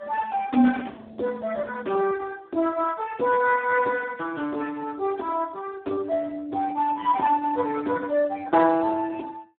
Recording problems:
telephone audio; 220 Hz to 2.3 kHz, Speex

